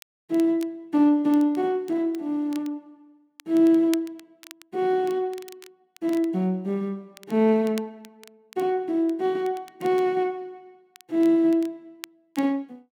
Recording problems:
crackling; vinyl, SNR 24 dB

